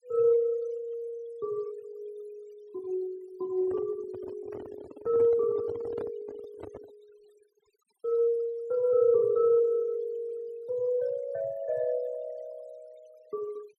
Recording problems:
denoising artefacts; signal-to-artefact ratio 27 dB
microphone handling noise; from 3.5 to 7 s; peak -8 dB vs average level

